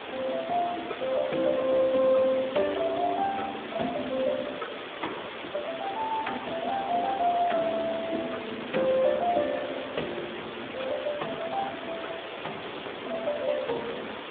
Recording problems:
telephone audio; 240 Hz to 3.6 kHz, Speex
hiss; SNR 8 dB
crackling; at 2.5 s, from 3.5 to 4.5 s and from 5 to 6.5 s; loose cable, SNR 22 dB

